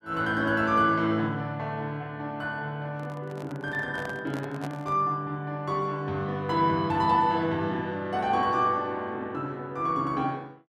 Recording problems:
handling noise; from 3 to 5 s; peak -6 dB vs average level

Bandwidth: 14 kHz